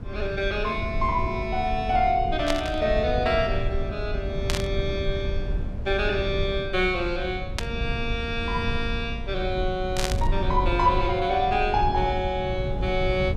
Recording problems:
rumble; below 100 Hz, SNR 5 dB
static burst; 4 times, first at 2.5 s; peak +2 dB vs average level

